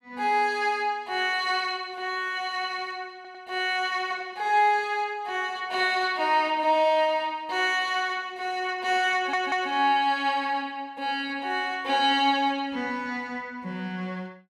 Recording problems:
audio stuttering; at 3 s and at 9 s

